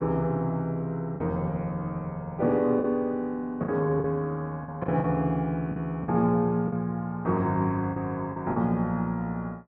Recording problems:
lost packets; 5% of the sound replaced, filled with the last packet

